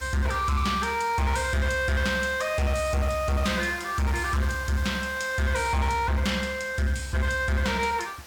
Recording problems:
distorted audio; hard clipping, uneven, signal-to-distortion ratio 7 dB
background hiss; SNR 18 dB

